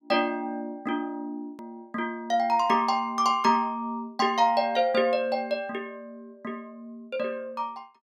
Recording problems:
click at an edit; at 1.5 s

